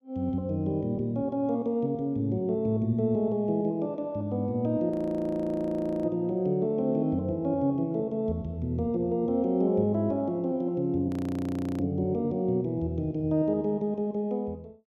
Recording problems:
audio freezing; at 5 s for 1 s and at 11 s for 0.5 s

